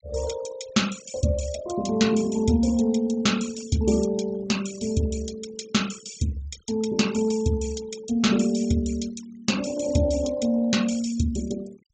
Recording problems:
low-pass filter; nothing above 8 kHz
noise reduction artefacts; signal-to-artefact ratio 16 dB

